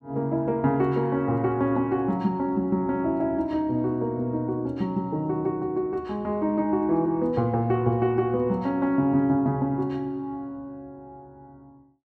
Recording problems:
none

